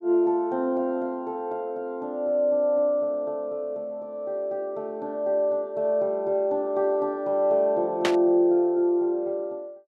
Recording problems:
static burst; at 8 s; peak +3 dB vs average level

